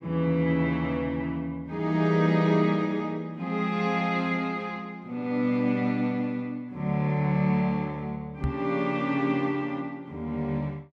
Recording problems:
microphone thump; at 8.5 s; peak +4 dB vs average level

